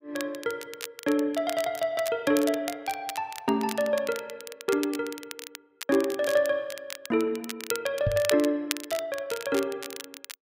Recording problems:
crackle; vinyl, SNR 11 dB
knock on the microphone; at 8 s; peak +3 dB vs average level

